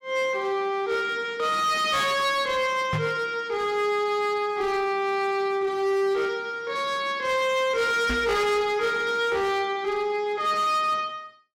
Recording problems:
distortion; hard clipping, signal-to-distortion ratio 11 dB
microphone bump; at 3 s and at 8 s; peak 0 dB vs average level

